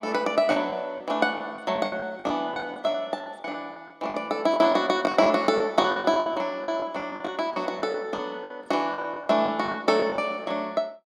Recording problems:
packet loss; 13% of the sound replaced, filled with the last packet

